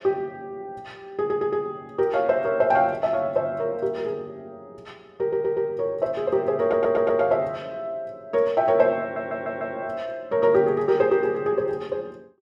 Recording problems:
audio stuttering; 4 times, first at 1 s

